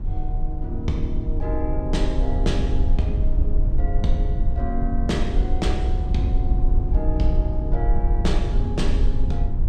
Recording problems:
low-frequency rumble; below 62 Hz, SNR -5 dB

